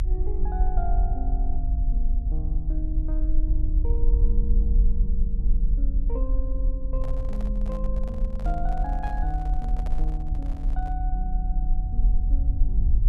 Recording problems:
low-frequency rumble; below 48 Hz, SNR -10 dB
handling noise; from 7 to 11 s; peak -2 dB vs average level

